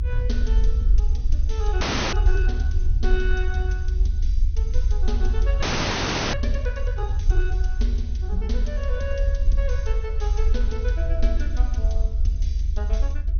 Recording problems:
codec artefacts; MP2, log-spectral distance 2 dB, nothing above 6.3 kHz
rumble; below 64 Hz, SNR -9 dB
audio freezing; at 2 s and at 5.5 s for 0.5 s

